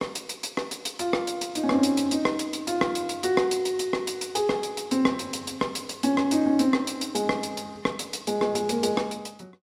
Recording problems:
none

